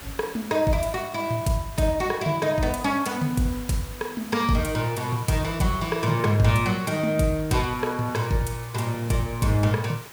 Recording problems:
hiss; slope -2 dB per octave, SNR 17 dB

